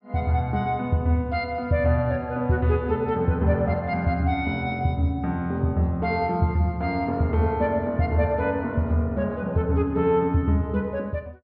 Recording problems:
treble cut off; nothing above 5.5 kHz

